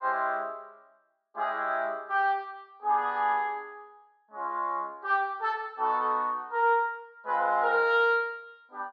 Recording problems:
none

